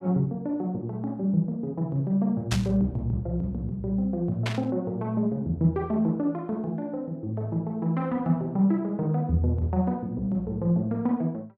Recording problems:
burst of static; at 2.5 s and at 4.5 s; peak +1 dB vs average level

